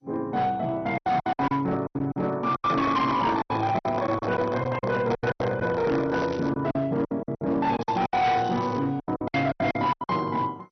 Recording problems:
lossy codec; MP2, log-spectral distance 3 dB, nothing above 6 kHz
distortion; hard clipping, signal-to-distortion ratio 11 dB
lost packets; 16% of the sound replaced, filled with silence
handling noise; from 2.5 to 6.5 s; peak 0 dB vs average level
crackling; at 6 s and at 8 s; loose cable, SNR 22 dB

